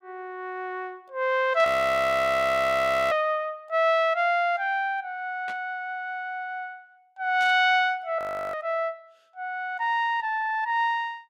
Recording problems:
burst of static; 4 times, first at 1.5 s; peak -13 dB vs average level
audio freezing; at 1.5 s for 1.5 s and at 8 s

